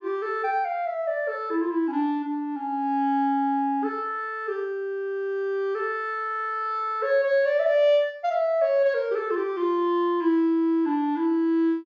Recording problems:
treble missing; nothing above 7.1 kHz

